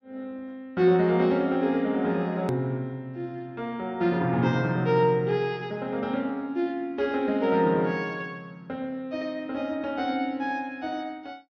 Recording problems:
treble cut off; nothing above 6.3 kHz
edit click; at 2.5 s

